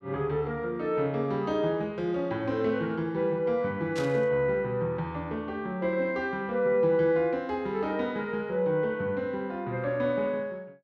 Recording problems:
static burst; at 4 s; peak -6 dB vs average level

